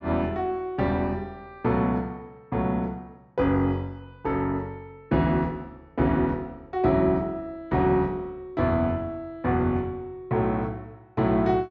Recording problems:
low-pass filter; nothing above 8 kHz

